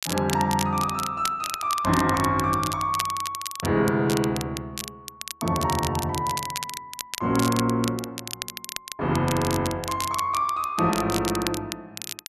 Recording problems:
crackle; vinyl, SNR 9 dB

